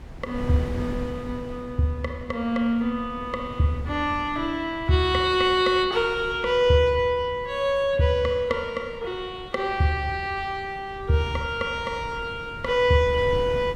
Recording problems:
wind on the microphone; below 270 Hz, SNR 16 dB

